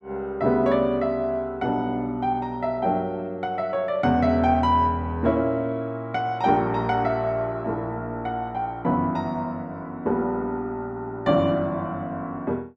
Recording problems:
none

